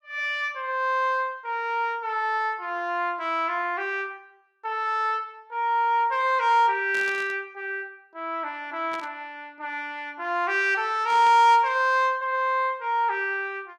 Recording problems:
burst of static; at 7 s, at 9 s and at 11 s; peak -10 dB vs average level

